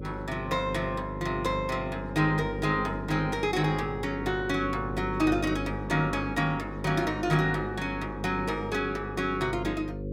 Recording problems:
electrical hum; 50 Hz, harmonics up to 550 Hz, SNR 8 dB

